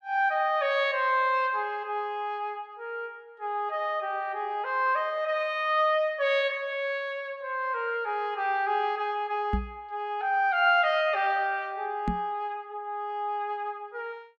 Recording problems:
microphone thump; at 9.5 s and at 12 s; peak +2 dB vs average level

